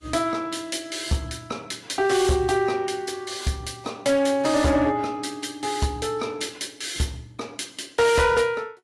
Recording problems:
codec artefacts; AAC, log-spectral distance 4 dB, nothing above 11.3 kHz
distortion; hard clipping, signal-to-distortion ratio 11 dB

